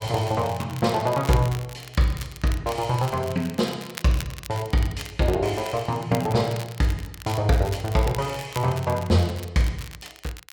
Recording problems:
crackle; vinyl, SNR 16 dB

